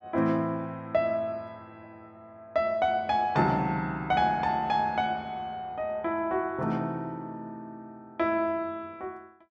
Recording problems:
none

